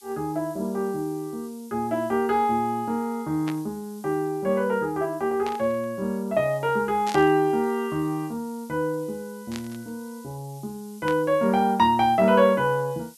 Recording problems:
hiss; SNR 25 dB
static burst; 5 times, first at 3.5 s; peak -7 dB vs average level

